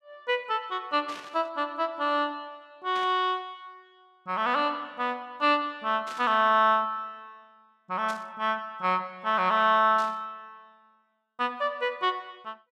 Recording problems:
burst of static; 5 times, first at 1 s; peak -12 dB vs average level

